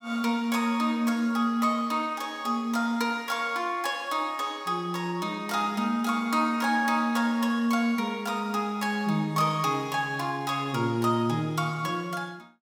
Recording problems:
none

